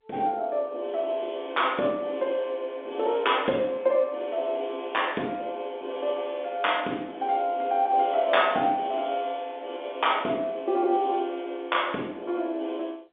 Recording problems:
telephone audio; 190 Hz to 3.6 kHz, G.711

